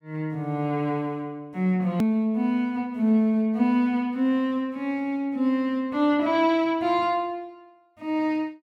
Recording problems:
click at an edit; at 2 s

